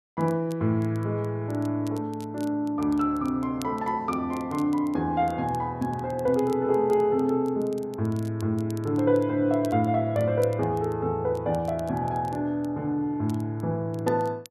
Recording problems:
crackle; vinyl, SNR 26 dB

